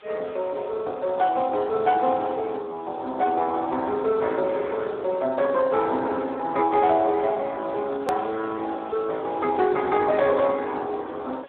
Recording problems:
telephone audio; 280 Hz to 3 kHz, Speex
background hiss; SNR 28 dB
edit click; at 8 s

